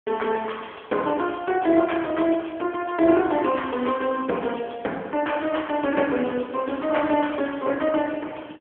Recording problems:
telephone audio; 220 Hz to 3.3 kHz, AMR-NB

